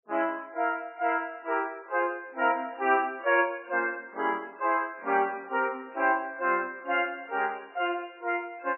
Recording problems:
lossy compression; MP3, log-spectral distance 3 dB, nothing above 2.8 kHz

